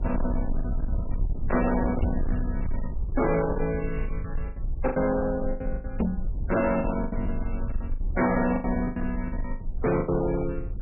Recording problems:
lossy compression; MP3, log-spectral distance 2 dB, nothing above 2.4 kHz
distortion; hard clipping, signal-to-distortion ratio 8 dB
low-frequency rumble; below 72 Hz, strongest tone 20 Hz, SNR 5 dB
lost packets; 12% of the sound replaced, filled with the last packet
knock on the microphone; at 2 s and at 6 s; peak +6 dB vs average level

